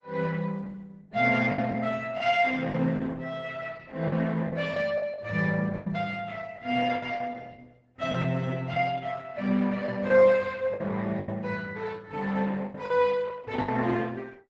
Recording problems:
lossy compression; Opus, log-spectral distance 4 dB, nothing above 8 kHz
packet loss; 8% of the sound replaced, filled with the last packet

